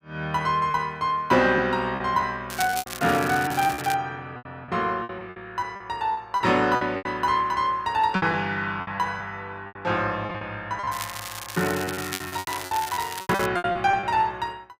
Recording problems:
lost packets; 12% of the sound replaced, filled with repeated pitch periods
crackle; from 2.5 to 4 s and from 11 to 13 s; loose cable, SNR 10 dB

